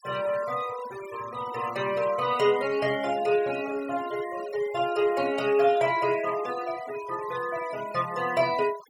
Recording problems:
denoising artefacts; signal-to-artefact ratio 15 dB

